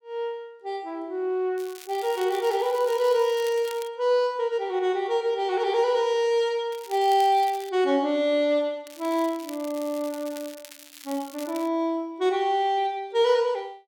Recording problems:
crackling; from 1.5 to 4 s, at 6.5 s and from 9 to 12 s; loose cable, SNR 19 dB

